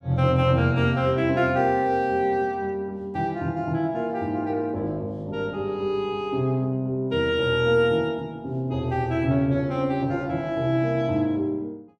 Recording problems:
none

